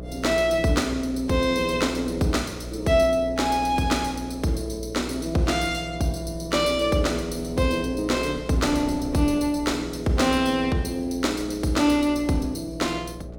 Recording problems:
mains hum; 60 Hz, harmonics up to 660 Hz, SNR 14 dB
wind on the microphone; below 460 Hz, SNR 20 dB

